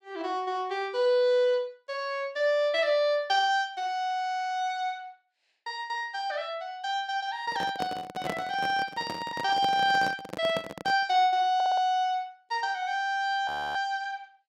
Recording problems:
microphone handling noise; from 7.5 to 11 s; peak -2 dB vs average level
audio stuttering; at 12 s
frozen audio; at 13 s

